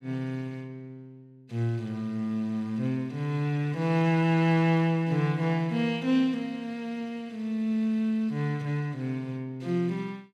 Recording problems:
none

